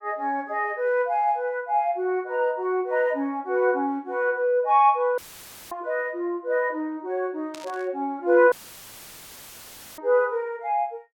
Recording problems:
dropout; at 5 s for 0.5 s and at 8.5 s for 1.5 s; filled with static
burst of static; at 7.5 s; peak -12 dB vs average level

